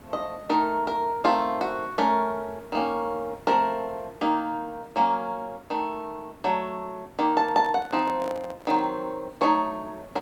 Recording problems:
hiss; slope -7 dB per octave, SNR 23 dB
microphone handling noise; from 7.5 to 9 s; peak -8 dB vs average level

